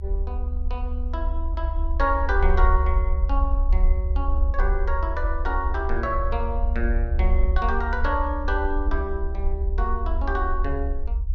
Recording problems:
rumble; below 66 Hz, SNR -3 dB

